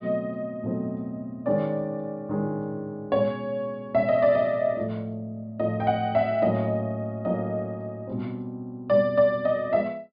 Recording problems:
low-pass filter; nothing above 4.8 kHz

